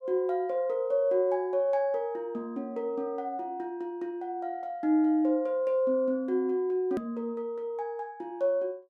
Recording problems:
click at an edit; at 7 s

